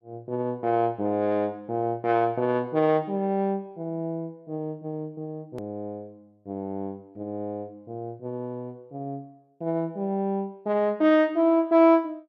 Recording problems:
edit click; at 5.5 s

